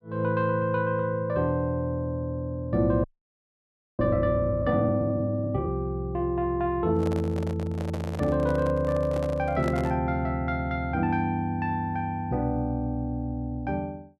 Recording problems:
audio freezing; at 3 s for 1 s
microphone handling noise; from 7 to 10 s; peak -3 dB vs average level

